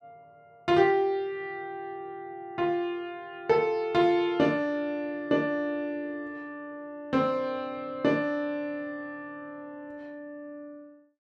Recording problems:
none

